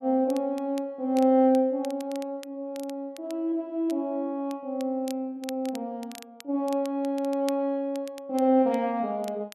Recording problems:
crackle; vinyl, SNR 21 dB

